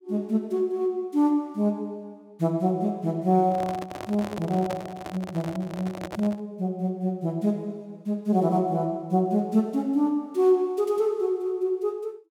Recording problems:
handling noise; from 3.5 to 6.5 s; peak -5 dB vs average level

